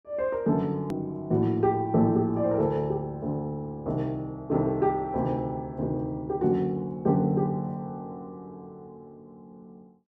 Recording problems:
hard cut with a click; at 1 s

